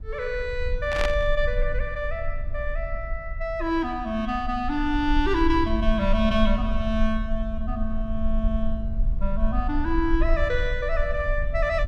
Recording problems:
low-frequency rumble; below 48 Hz, strongest tone 24 Hz, SNR 4 dB
burst of static; at 1 s; peak +2 dB vs average level

